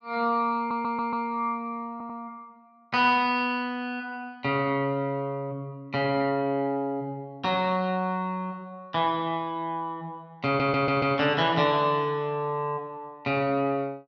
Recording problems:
stutter; at 0.5 s, at 2 s and at 10 s

